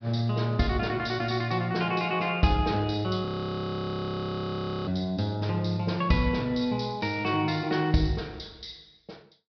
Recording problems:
treble cut off; nothing above 5.5 kHz
audio freezing; at 3.5 s for 1.5 s

